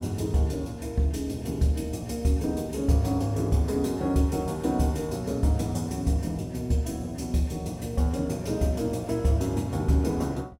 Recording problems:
none

